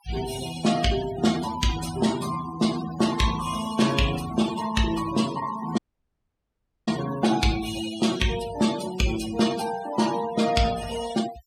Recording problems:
noise reduction artefacts; signal-to-artefact ratio 11 dB
dropout; at 6 s for 1 s

